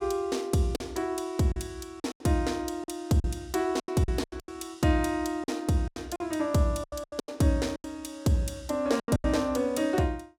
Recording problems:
packet loss; 12% of the sound replaced, filled with silence

